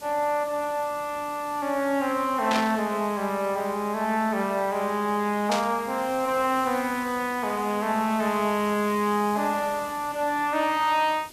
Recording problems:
background hiss; SNR 18 dB
static burst; at 2.5 s and at 5.5 s; peak +1 dB vs average level

